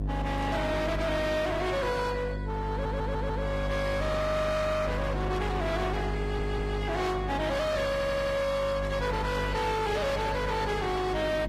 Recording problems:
codec artefacts; AAC, then Vorbis, log-spectral distance 3 dB, nothing above 14.7 kHz
distorted audio; hard clipping, signal-to-distortion ratio 7 dB
hum; 50 Hz, harmonics up to 650 Hz, SNR 4 dB
static burst; at 1 s, at 7 s and at 9 s; peak -16 dB vs average level
stutter; at 2.5 s, at 6 s and at 8 s

